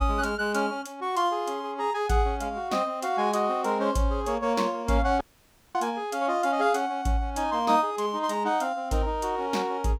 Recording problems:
dropout; at 5 s for 0.5 s

